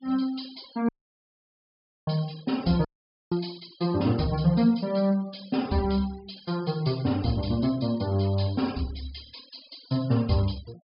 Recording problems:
low-pass filter; nothing above 5.5 kHz
denoising artefacts; signal-to-artefact ratio 22 dB
audio cutting out; at 1 s for 1 s and at 3 s

